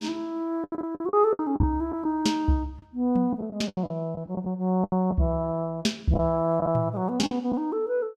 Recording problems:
lost packets; 10% of the sound replaced, filled with the last packet

